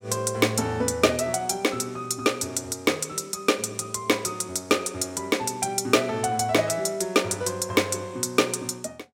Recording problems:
none

